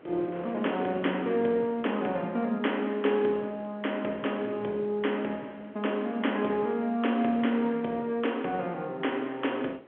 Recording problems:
telephone audio; 280 Hz to 3.3 kHz, G.711
wind on the microphone; below 920 Hz, SNR 20 dB

